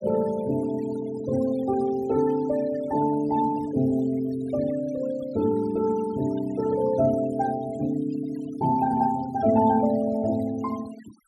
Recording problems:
denoising artefacts; signal-to-artefact ratio 19 dB

